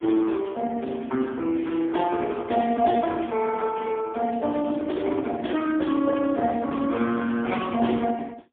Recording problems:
phone line; 240 Hz to 3.5 kHz, AMR-NB, then MP3

